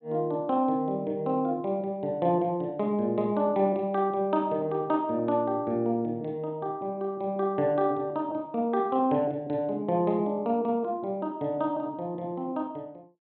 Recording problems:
treble cut off; nothing above 4 kHz

